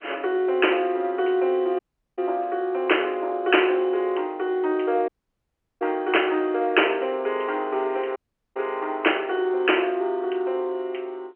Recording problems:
phone line; 280 Hz to 3.1 kHz, G.711
dropout; at 2 s, at 5 s for 0.5 s and at 8 s

